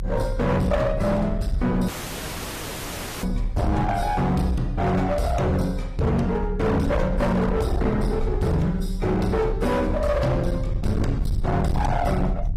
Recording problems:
lossy compression; AAC, log-spectral distance 3 dB, nothing above 14.3 kHz
distorted audio; hard clipping, signal-to-distortion ratio 8 dB
rumble; below 98 Hz, strongest tone 36 Hz, SNR 6 dB
dropout; at 2 s for 1.5 s

